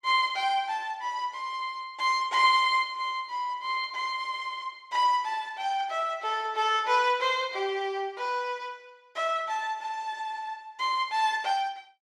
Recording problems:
none

